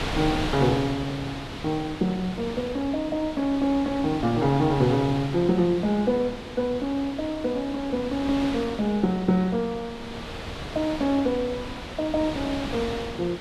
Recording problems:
wind noise; below 2.5 kHz, SNR 9 dB

